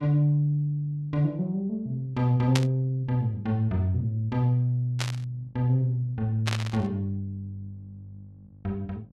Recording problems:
hum; 50 Hz, harmonics up to 600 Hz, SNR 28 dB
burst of static; at 2.5 s, at 5 s and at 6.5 s; peak +3 dB vs average level

